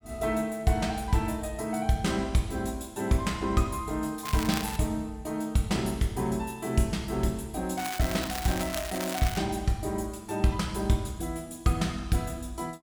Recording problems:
crackling; at 4.5 s and from 8 to 9.5 s; loose cable, SNR 7 dB

